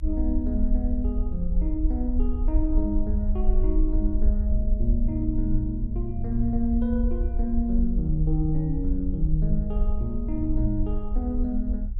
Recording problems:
rumble; below 54 Hz, SNR -1 dB

